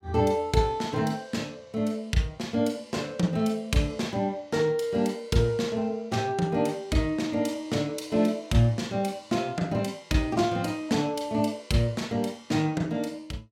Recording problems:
none

